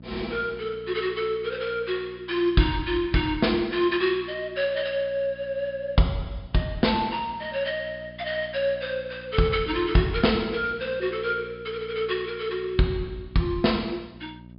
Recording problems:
treble missing; nothing above 5.2 kHz
hum; 60 Hz, harmonics up to 660 Hz, SNR 21 dB

